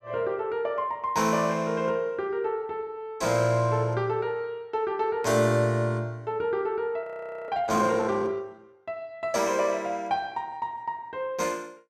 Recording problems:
frozen audio; at 7 s

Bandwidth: 14.5 kHz